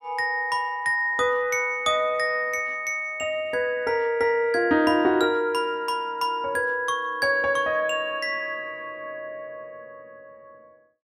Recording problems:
none

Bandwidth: 15.5 kHz